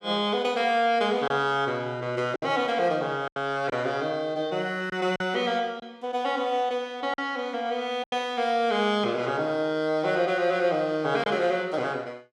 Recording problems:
packet loss; 3% of the sound replaced, filled with silence

